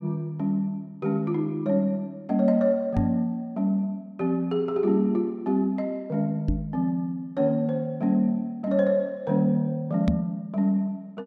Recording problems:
microphone thump; at 3 s, at 6.5 s and at 10 s; peak +3 dB vs average level

